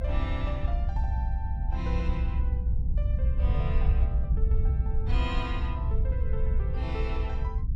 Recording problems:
rumble; below 68 Hz, SNR -10 dB

